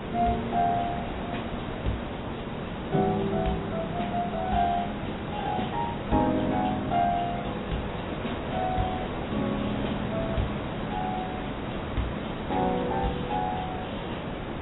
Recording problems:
lossy codec; AAC, log-spectral distance 9 dB, nothing above 3.8 kHz
background hiss; SNR 4 dB

